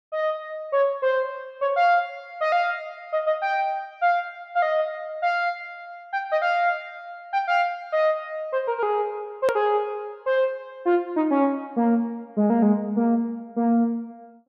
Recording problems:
edit click; at 9.5 s

